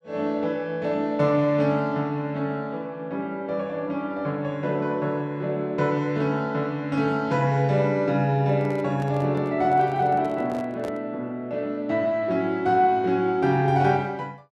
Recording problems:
microphone handling noise; from 8.5 to 11 s; peak -7 dB vs average level

